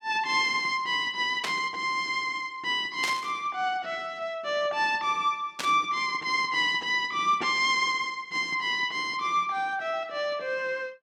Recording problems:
burst of static; at 1.5 s, at 3 s and at 5.5 s; peak 0 dB vs average level

